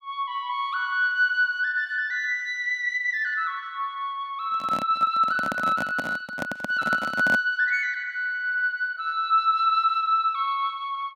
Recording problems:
handling noise; from 4.5 to 7.5 s; peak -3 dB vs average level

